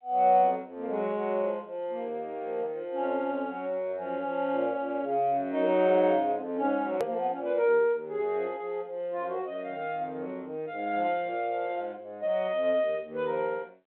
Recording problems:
telephone audio; 320 Hz to 3.5 kHz, G.726
click at an edit; at 7 s

